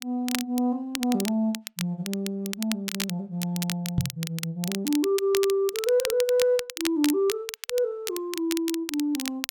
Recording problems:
crackling; vinyl, SNR 7 dB
microphone bump; at 4 s; peak +6 dB vs average level

